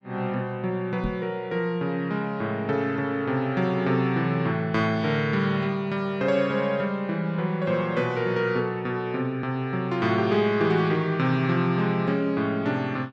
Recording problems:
knock on the microphone; at 1 s; peak -2 dB vs average level

